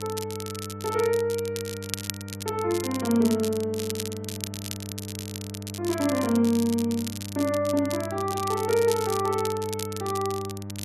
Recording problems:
hum; 50 Hz, harmonics up to 1.2 kHz, SNR 11 dB
crackle; vinyl, SNR 10 dB

